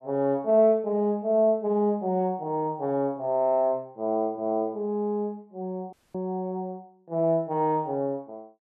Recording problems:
dropout; at 6 s

